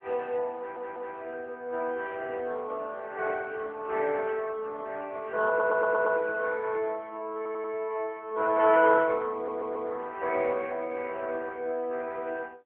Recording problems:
telephone audio; 300 Hz to 3.5 kHz, AMR-NB
audio stuttering; 4 times, first at 0.5 s

